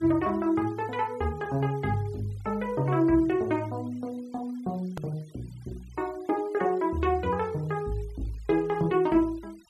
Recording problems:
noise reduction artefacts; signal-to-artefact ratio 27 dB
hard cut with a click; at 5 s

